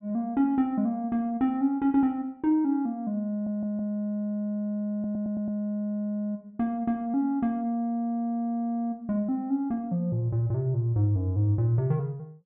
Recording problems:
treble cut off; nothing above 4 kHz
stutter; at 3.5 s and at 5 s

